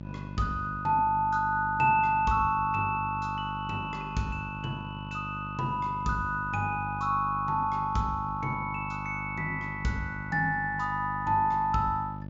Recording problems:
treble missing; nothing above 7.4 kHz
hum; 50 Hz, harmonics up to 900 Hz, SNR 11 dB

